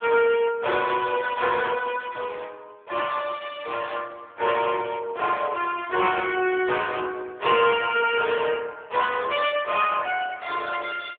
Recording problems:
phone line; 320 Hz to 3.4 kHz, AMR-NB

